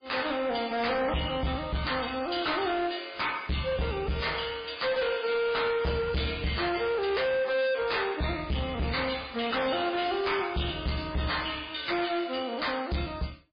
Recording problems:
lossy codec; MP3, log-spectral distance 7 dB, nothing above 4.8 kHz
distortion; hard clipping, signal-to-distortion ratio 6 dB

